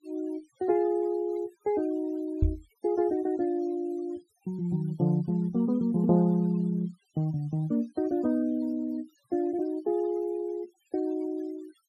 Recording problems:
noise reduction artefacts; signal-to-artefact ratio 27 dB
microphone thump; at 2.5 s; peak +7 dB vs average level

